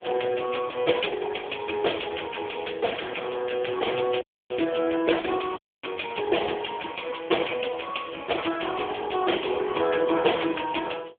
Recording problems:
telephone audio; 280 Hz to 3.4 kHz, AMR-NB
audio cutting out; at 4 s and at 5.5 s

